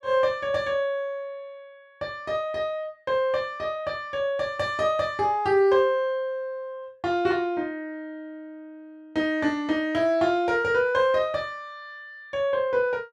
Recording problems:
none

